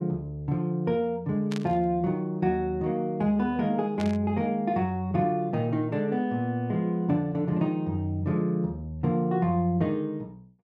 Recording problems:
static burst; at 1.5 s and at 4 s; peak -7 dB vs average level

